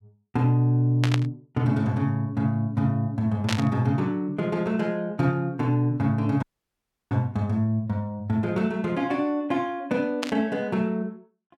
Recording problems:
burst of static; at 1 s, at 3.5 s and at 10 s; peak +1 dB vs average level
audio cutting out; at 6.5 s for 0.5 s

